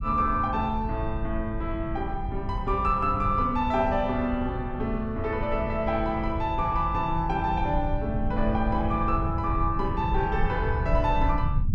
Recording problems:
low-frequency rumble; below 100 Hz, SNR 5 dB

